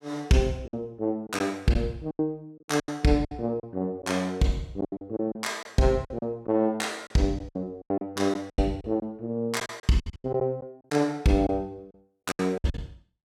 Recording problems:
packet loss; 12% of the sound replaced, filled with silence

